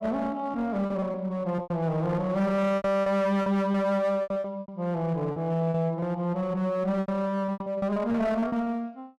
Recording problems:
distortion; hard clipping, uneven, signal-to-distortion ratio 7 dB
packet loss; 12% of the sound replaced, filled with repeated pitch periods

